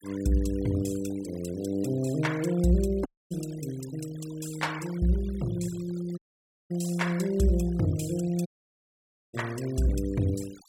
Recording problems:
noise reduction artefacts; signal-to-artefact ratio 18 dB
audio cutting out; at 3 s, at 6 s for 0.5 s and at 8.5 s for 1 s

